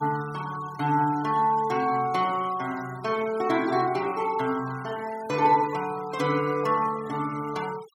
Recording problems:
noise reduction artefacts; signal-to-artefact ratio 19 dB

